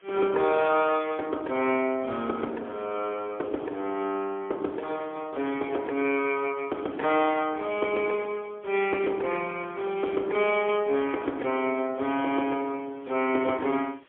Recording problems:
telephone audio; 260 Hz to 3.4 kHz, AMR-NB, then MP3
hiss; SNR 30 dB

